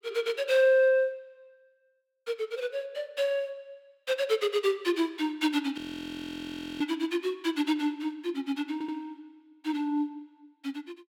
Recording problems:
frozen audio; at 6 s for 1 s
stutter; at 8.5 s

